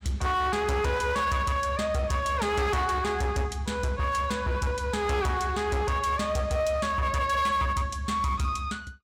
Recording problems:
distorted audio; hard clipping, uneven, signal-to-distortion ratio 10 dB

